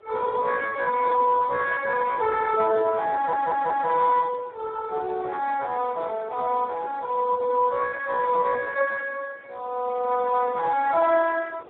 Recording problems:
telephone audio; 340 Hz to 2.2 kHz, Speex
wind on the microphone; below 790 Hz, SNR 20 dB
audio stuttering; at 3 s

